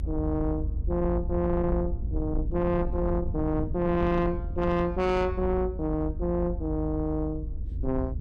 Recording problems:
distorted audio; soft clipping, signal-to-distortion ratio 11 dB
rumble; below 78 Hz, SNR 5 dB

